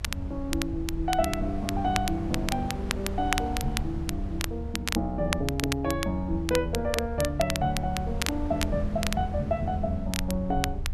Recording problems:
low-frequency rumble; below 76 Hz, SNR 6 dB
wind noise; below 750 Hz, SNR 16 dB
crackle; vinyl, SNR 5 dB

